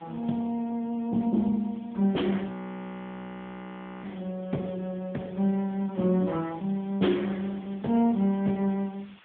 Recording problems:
telephone audio; 150 Hz to 3.7 kHz, AMR-NB
hiss; SNR 28 dB
frozen audio; at 2.5 s for 1.5 s

